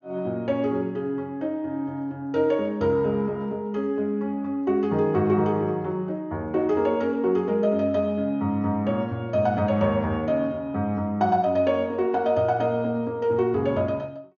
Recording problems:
treble cut off; nothing above 6.9 kHz

